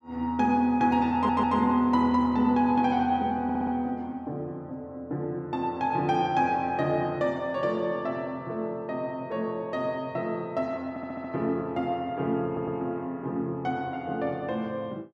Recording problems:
stutter; 4 times, first at 1 s

